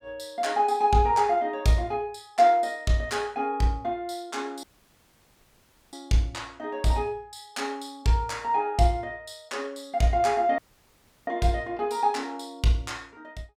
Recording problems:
audio cutting out; at 4.5 s for 1.5 s and at 11 s for 0.5 s

